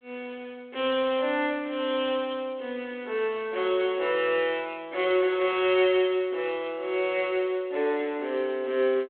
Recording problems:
phone line; 320 Hz to 3.6 kHz, G.726

